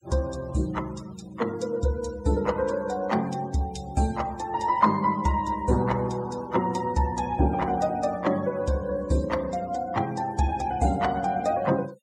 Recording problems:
noise reduction artefacts; signal-to-artefact ratio 21 dB

